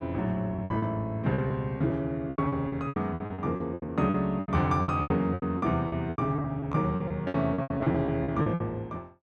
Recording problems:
lost packets; 20% of the sound replaced, filled with repeated pitch periods

